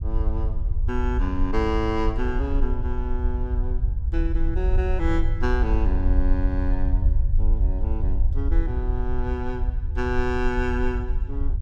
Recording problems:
low-frequency rumble; below 62 Hz, SNR -4 dB

